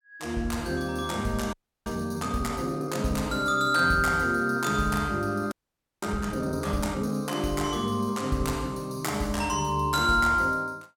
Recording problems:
frozen audio; at 1.5 s and at 5.5 s for 0.5 s

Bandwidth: 17 kHz